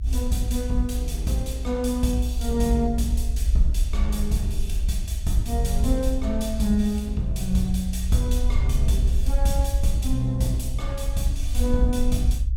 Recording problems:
rumble; below 60 Hz, SNR 0 dB

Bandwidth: 17 kHz